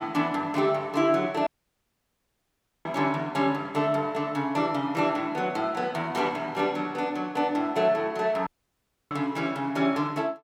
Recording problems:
dropout; at 1.5 s for 1.5 s and at 8.5 s for 0.5 s

